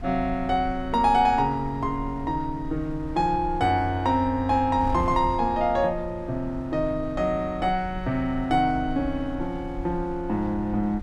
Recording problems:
wind on the microphone; below 88 Hz, SNR 14 dB

